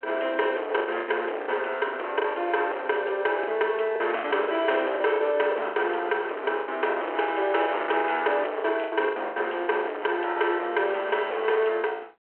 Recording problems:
telephone audio; 300 Hz to 3.3 kHz, G.726
distortion; hard clipping, signal-to-distortion ratio 9 dB
packet loss; 11% of the sound replaced, filled with the last packet

